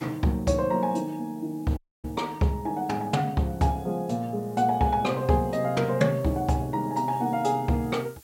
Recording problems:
hiss; slope 0 dB per octave, SNR 27 dB
dropout; at 2 s

